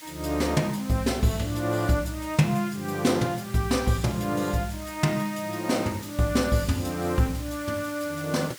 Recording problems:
background hiss; slope +1 dB per octave, SNR 16 dB

